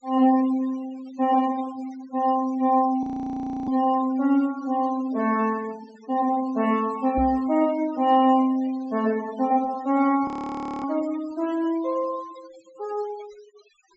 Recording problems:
treble missing; nothing above 7.9 kHz
denoising artefacts; signal-to-artefact ratio 21 dB
audio freezing; at 3 s for 0.5 s and at 10 s for 0.5 s
knock on the microphone; at 7 s; peak -1 dB vs average level

